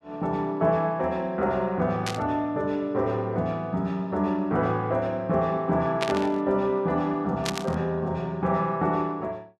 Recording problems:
burst of static; at 2 s, at 6 s and at 7.5 s; peak +1 dB vs average level

